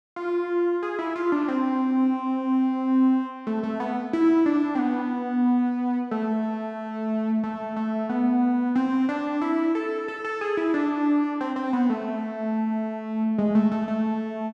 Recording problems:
none

